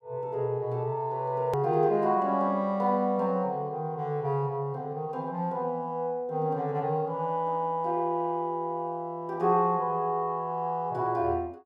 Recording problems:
edit click; at 1.5 s

